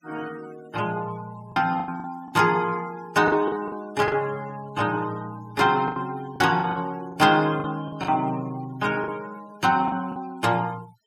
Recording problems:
noise reduction artefacts; signal-to-artefact ratio 22 dB
packet loss; 8% of the sound replaced, filled with the last packet

